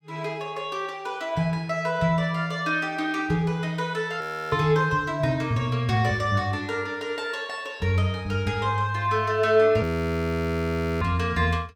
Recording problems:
frozen audio; at 4 s and at 10 s for 1 s

